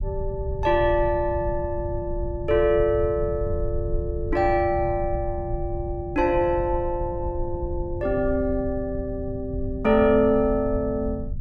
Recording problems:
low-frequency rumble; below 96 Hz, SNR 8 dB

